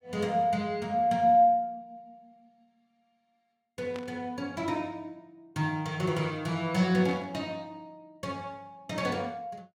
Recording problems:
static burst; at 4 s and at 7 s; peak -11 dB vs average level

